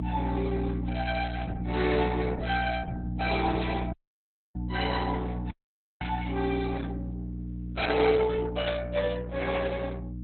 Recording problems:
codec artefacts; Opus, log-spectral distance 4 dB, nothing above 4.1 kHz
electrical hum; 60 Hz, harmonics up to 300 Hz, SNR 4 dB
audio cutting out; at 4 s for 0.5 s and at 5.5 s for 0.5 s

